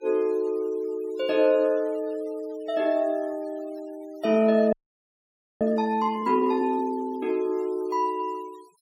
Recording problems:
noise reduction artefacts; signal-to-artefact ratio 28 dB
frozen audio; at 4.5 s for 1 s

